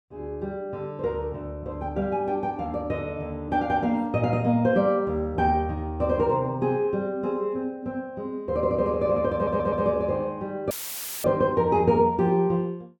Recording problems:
stutter; at 9.5 s
audio cutting out; at 11 s for 0.5 s; filled with static

